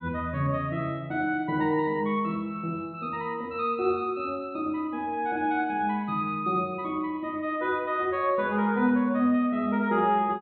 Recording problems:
low-pass filter; nothing above 4 kHz

